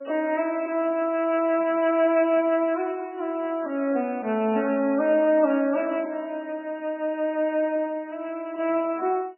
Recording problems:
codec artefacts; MP3, then MP3, log-spectral distance 3 dB, nothing above 2.4 kHz

